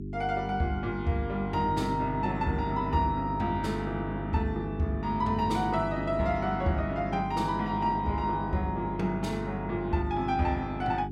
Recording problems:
hum; 50 Hz, harmonics up to 400 Hz, SNR 6 dB

